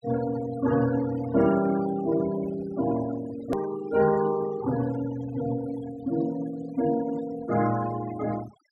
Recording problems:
denoising artefacts; signal-to-artefact ratio 13 dB
hard cut with a click; at 3.5 s

